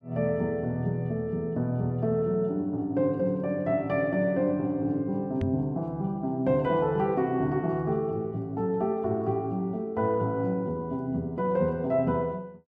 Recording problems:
microphone bump; at 5.5 s; peak +1 dB vs average level

